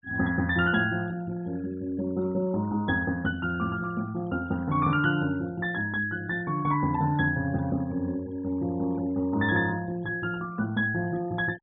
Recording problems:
treble cut off; nothing above 4 kHz
denoising artefacts; signal-to-artefact ratio 23 dB

